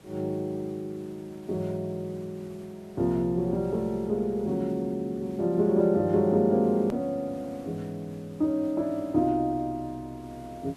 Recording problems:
hiss; slope -5 dB per octave, SNR 25 dB
edit click; at 7 s

